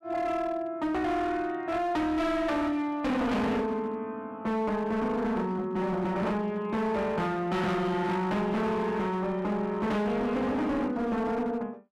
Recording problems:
distorted audio; hard clipping, signal-to-distortion ratio 8 dB

